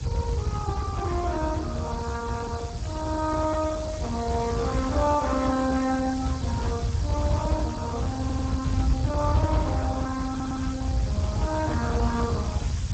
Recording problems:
lossy codec; Speex, log-spectral distance 3 dB
hiss; slope +2 dB per octave, SNR 14 dB
rumble; below 120 Hz, SNR 1 dB
burst of static; at 4.5 s and at 9 s; peak -14 dB vs average level
audio stuttering; at 8 s and at 10 s

